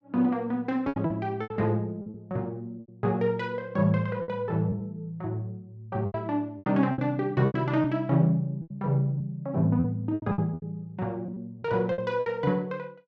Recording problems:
packet loss; 11% of the sound replaced, filled with repeated pitch periods

